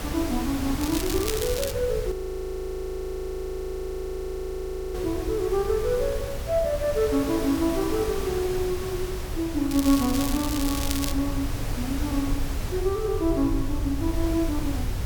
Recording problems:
background hiss; slope -4 dB per octave, SNR 9 dB
low-frequency rumble; below 84 Hz, SNR 7 dB
crackle; at 1 s and from 9.5 to 11 s; loose cable, SNR 5 dB
frozen audio; at 2 s for 3 s

